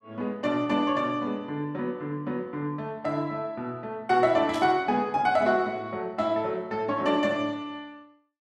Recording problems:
burst of static; at 4.5 s; peak -8 dB vs average level

